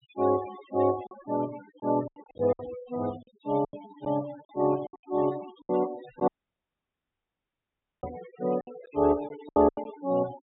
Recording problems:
low-pass filter; nothing above 4 kHz
denoising artefacts; signal-to-artefact ratio 18 dB
lost packets; 13% of the sound replaced, filled with silence
audio cutting out; at 6.5 s for 1.5 s
microphone bump; at 8 s; peak -12 dB vs average level

